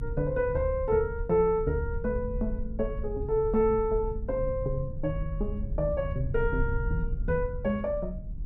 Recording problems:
low-frequency rumble; below 80 Hz, SNR 7 dB

